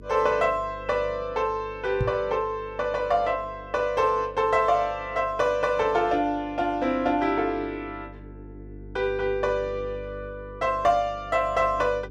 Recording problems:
hum; 50 Hz, harmonics up to 450 Hz, SNR 19 dB
knock on the microphone; at 2 s; peak +2 dB vs average level

